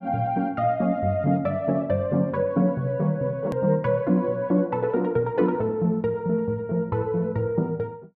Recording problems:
edit click; at 3.5 s

